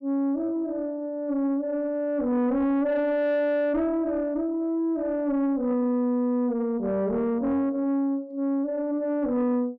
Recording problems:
distorted audio; soft clipping, signal-to-distortion ratio 11 dB

